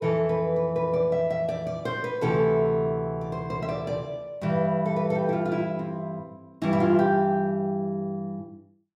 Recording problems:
none

